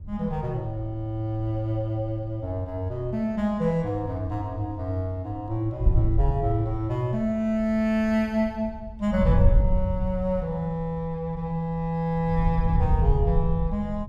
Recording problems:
wind noise; below 88 Hz, SNR 0 dB

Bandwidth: 15 kHz